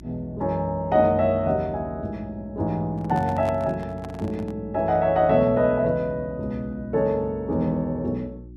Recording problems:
mains hum; 60 Hz, harmonics up to 360 Hz, SNR 19 dB
handling noise; from 3 to 4.5 s; peak -8 dB vs average level

